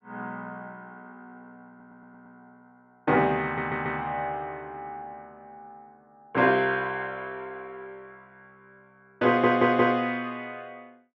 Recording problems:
stutter; at 1.5 s, at 3.5 s and at 9.5 s

